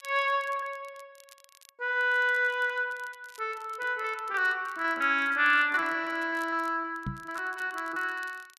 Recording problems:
crackling; vinyl, SNR 27 dB
lost packets; 10% of the sound replaced, filled with repeated pitch periods
knock on the microphone; at 7 s; peak -2 dB vs average level

